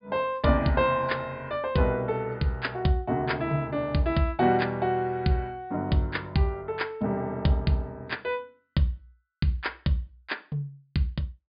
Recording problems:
treble missing; nothing above 4.9 kHz

